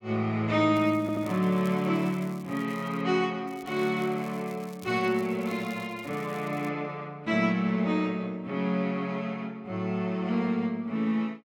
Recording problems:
crackling; from 0.5 to 3 s and from 3.5 to 6.5 s; loose cable, SNR 24 dB
audio stuttering; at 1 s

